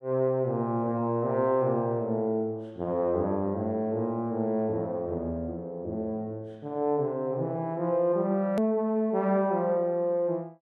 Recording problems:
hard cut with a click; at 8.5 s

